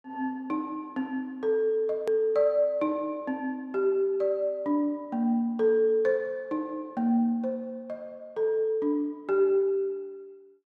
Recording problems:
click at an edit; at 2 s

